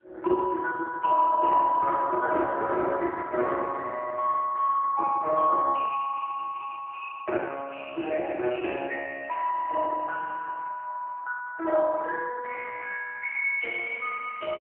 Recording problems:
telephone audio; 300 Hz to 2.6 kHz, AMR-NB

